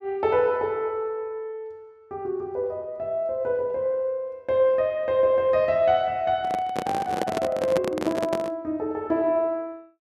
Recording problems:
handling noise; from 6.5 to 8.5 s; peak +2 dB vs average level

